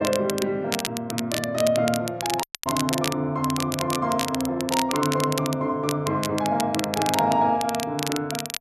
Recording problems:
crackling; vinyl, SNR 6 dB
dropout; at 2.5 s

